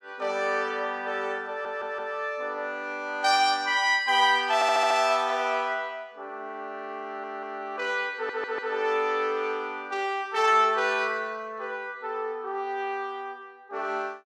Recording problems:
audio stuttering; 4 times, first at 1.5 s

